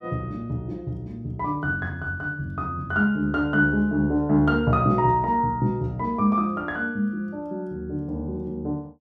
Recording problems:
none

